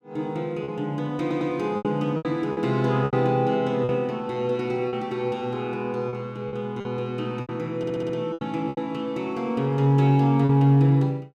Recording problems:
lost packets; 8% of the sound replaced, filled with repeated pitch periods
stutter; at 1 s and at 8 s

